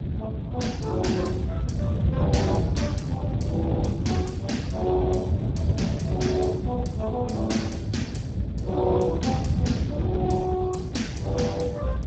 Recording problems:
codec artefacts; Speex, log-spectral distance 3 dB, nothing above 7.6 kHz
hum; 60 Hz, harmonics up to 420 Hz, SNR 22 dB
low-frequency rumble; below 190 Hz, SNR 0 dB

